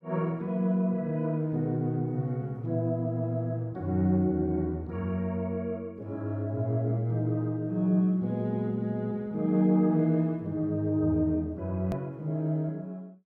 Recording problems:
click at an edit; at 12 s

